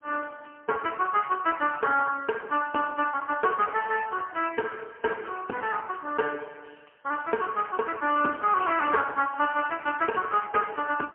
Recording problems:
phone line; 260 Hz to 3 kHz, AMR-NB, then MP3

